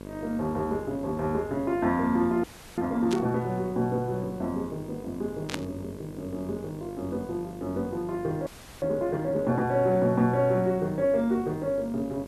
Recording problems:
hum; 50 Hz, harmonics up to 1.7 kHz, SNR 15 dB
background hiss; slope 0 dB per octave, SNR 29 dB
audio freezing; at 2.5 s and at 8.5 s
static burst; at 3 s and at 5.5 s; peak 0 dB vs average level

